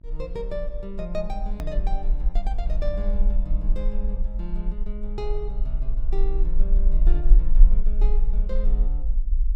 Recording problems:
hum; 50 Hz, harmonics up to 700 Hz, SNR 20 dB
low-frequency rumble; below 40 Hz, strongest tone 18 Hz, SNR -9 dB
hard cut with a click; at 1.5 s

